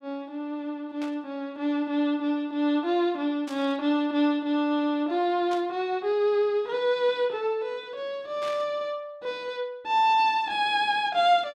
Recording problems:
burst of static; 4 times, first at 1 s; peak -11 dB vs average level

